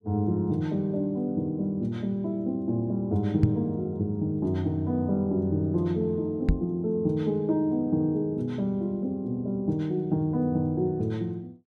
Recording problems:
microphone bump; at 3.5 s and at 6.5 s; peak +8 dB vs average level

